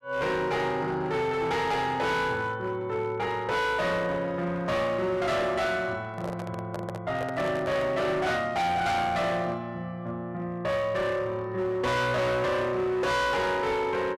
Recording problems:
distortion; hard clipping, uneven, signal-to-distortion ratio 7 dB
microphone handling noise; from 6 to 8 s; peak -3 dB vs average level

